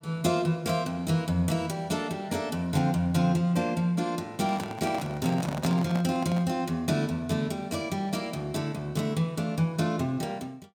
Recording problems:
handling noise; from 4.5 to 6.5 s; peak 0 dB vs average level

